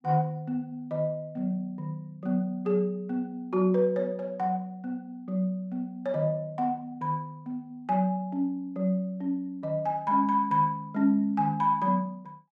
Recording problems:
none

